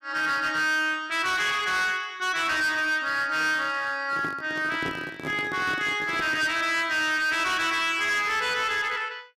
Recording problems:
distortion; hard clipping, uneven, signal-to-distortion ratio 11 dB
handling noise; from 4 to 6.5 s; peak -5 dB vs average level

